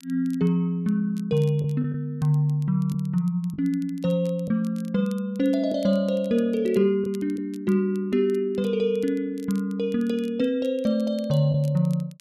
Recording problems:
crackling; vinyl, SNR 29 dB
packet loss; 1.8% of the sound replaced, filled with the last packet

